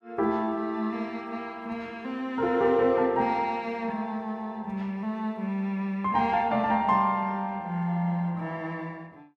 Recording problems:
none

